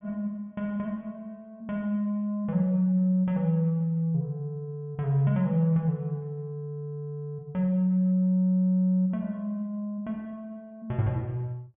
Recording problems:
treble missing; nothing above 3.4 kHz

